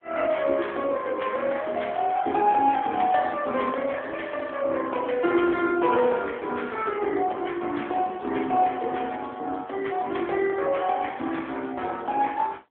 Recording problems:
telephone audio; 220 Hz to 3.5 kHz, AMR-NB

